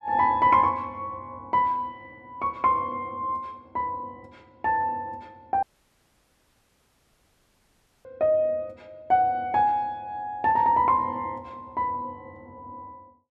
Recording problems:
audio cutting out; at 5.5 s for 2.5 s

